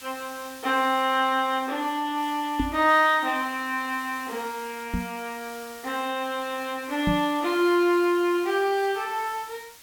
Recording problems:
hiss; slope +2 dB per octave, SNR 19 dB
microphone thump; at 2.5 s, at 5 s and at 7 s; peak +2 dB vs average level

